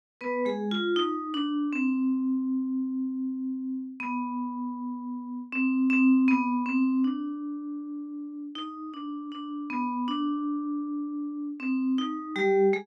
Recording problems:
none

